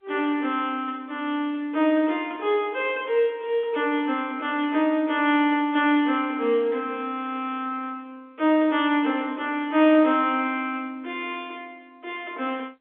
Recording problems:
telephone audio; 220 Hz to 3.6 kHz, G.711

